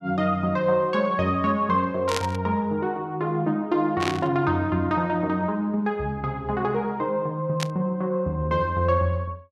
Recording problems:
static burst; at 2 s, at 4 s and at 7.5 s; peak +1 dB vs average level

